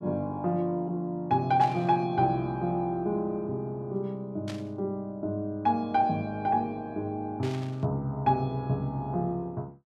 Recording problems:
burst of static; at 1.5 s, at 4.5 s and at 7.5 s; peak -8 dB vs average level

